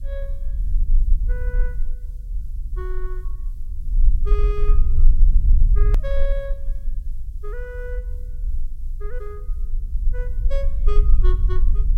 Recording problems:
hiss; SNR 28 dB
rumble; below 42 Hz, strongest tone 20 Hz, SNR -12 dB
hard cut with a click; at 6 s

